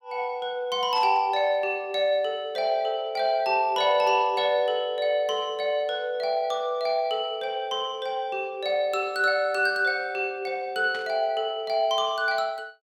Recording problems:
static burst; at 1 s and at 11 s; peak -11 dB vs average level

